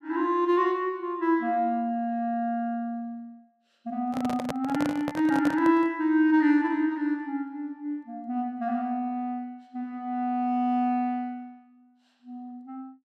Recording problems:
handling noise; from 4 to 6 s; peak -1 dB vs average level

